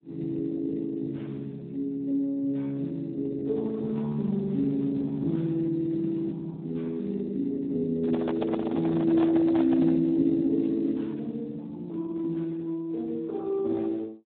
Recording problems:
phone line; 110 Hz to 2.3 kHz, Speex
handling noise; from 8 to 10 s; peak 0 dB vs average level

